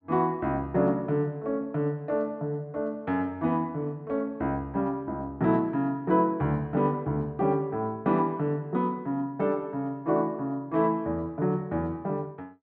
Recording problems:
none

